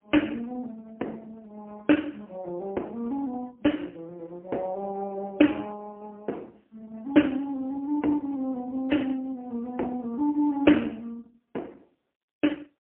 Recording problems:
telephone audio; 240 Hz to 3.1 kHz, AMR-NB, then MP3

